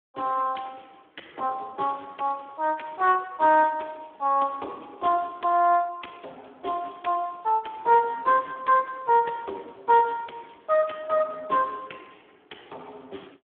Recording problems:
telephone audio; 300 Hz to 2.8 kHz, Speex

